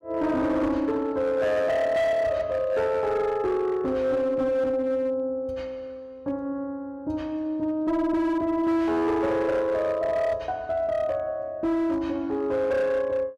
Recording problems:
distorted audio; hard clipping, signal-to-distortion ratio 12 dB

